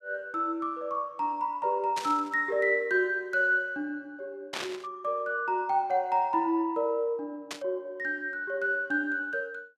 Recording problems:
static burst; at 2 s, at 4.5 s and at 7.5 s; peak -1 dB vs average level

